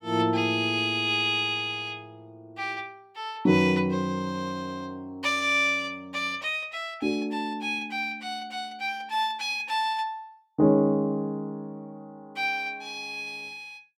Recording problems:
none

